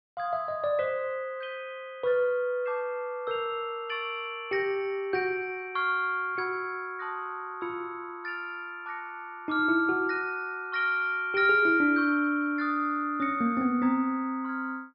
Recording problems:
treble missing; nothing above 5.5 kHz

